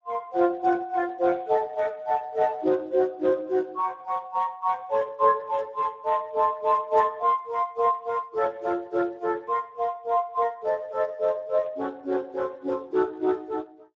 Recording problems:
lossy compression; Speex, log-spectral distance 3 dB

